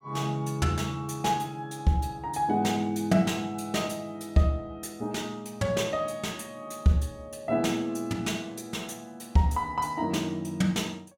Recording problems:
none

